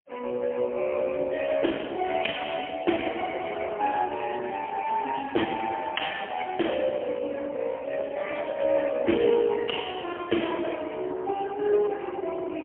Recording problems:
telephone audio; 260 Hz to 3.1 kHz, AMR-NB, then MP3

